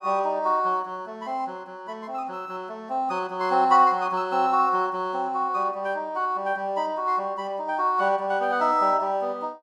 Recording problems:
none

